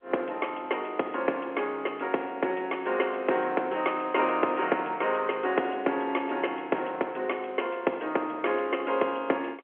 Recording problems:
phone line; 280 Hz to 3.1 kHz, G.711

